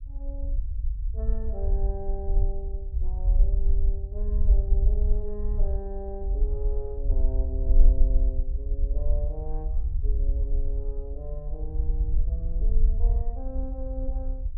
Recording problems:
rumble; below 50 Hz, SNR -12 dB

